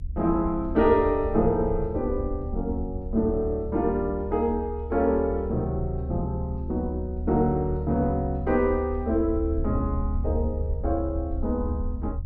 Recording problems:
low-frequency rumble; below 74 Hz, strongest tone 72 Hz, SNR 6 dB

